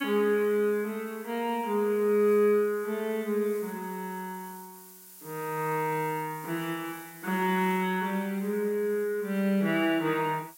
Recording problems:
background hiss; SNR 20 dB

